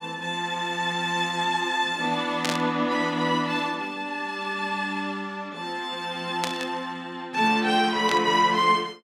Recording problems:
burst of static; at 2.5 s, at 6.5 s and at 8 s; peak +2 dB vs average level

